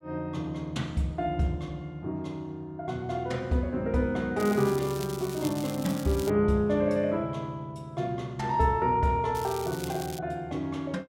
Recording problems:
crackle; from 4.5 to 6.5 s and at 9.5 s; loose cable, SNR 13 dB

